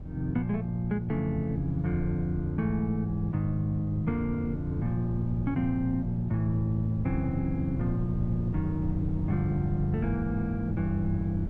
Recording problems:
wind noise; below 160 Hz, SNR 8 dB

